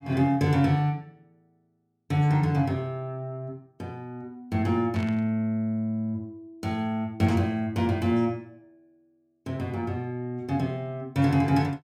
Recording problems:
burst of static; at 5 s; peak -12 dB vs average level

